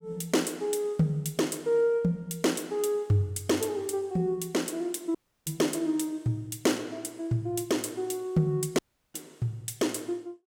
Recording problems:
audio cutting out; at 5 s and at 9 s

